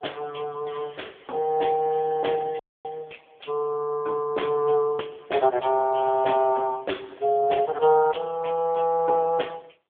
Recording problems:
phone line; 320 Hz to 3.4 kHz, AMR-NB
dropout; at 2.5 s

